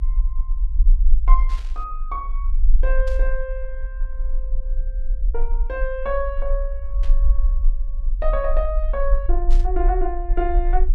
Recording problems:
rumble; below 40 Hz, strongest tone 26 Hz, SNR -4 dB
burst of static; 4 times, first at 1.5 s; peak -10 dB vs average level

